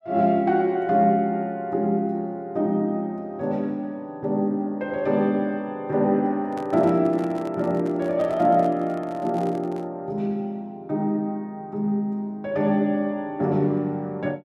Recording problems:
microphone handling noise; from 6.5 to 10 s; peak -11 dB vs average level

